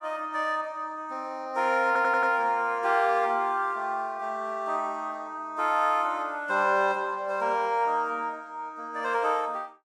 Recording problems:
stutter; at 2 s

